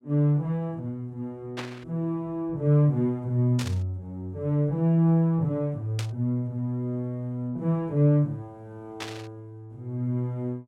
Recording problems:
static burst; 4 times, first at 1.5 s; peak -5 dB vs average level

